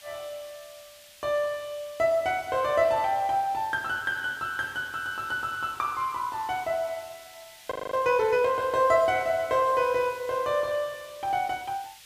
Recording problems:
background hiss; SNR 21 dB
audio freezing; at 7.5 s

